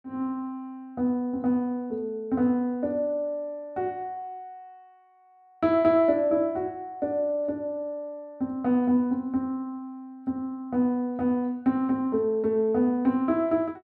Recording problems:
none

